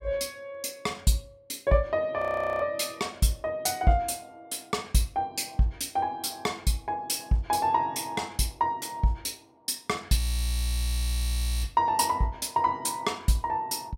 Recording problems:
audio freezing; at 2 s and at 10 s for 1.5 s

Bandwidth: 16 kHz